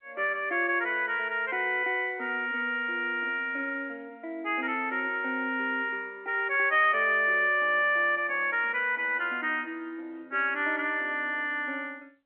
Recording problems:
phone line; 260 Hz to 3.3 kHz, G.711

